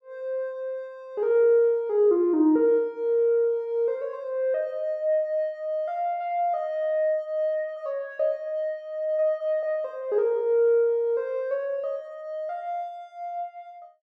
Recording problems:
none

